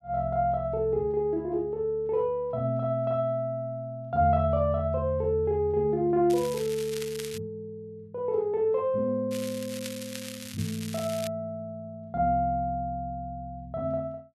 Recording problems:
crackling; from 6.5 to 7.5 s and from 9.5 to 11 s; loose cable, SNR 12 dB

